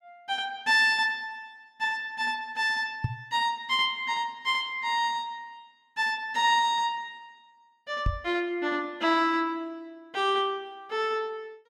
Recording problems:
knock on the microphone; at 3 s and at 8 s; peak +2 dB vs average level

